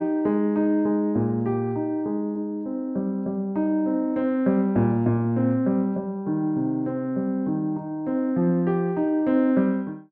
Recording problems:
none

